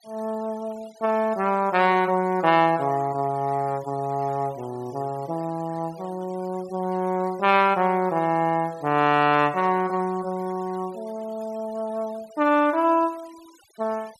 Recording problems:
denoising artefacts; signal-to-artefact ratio 25 dB

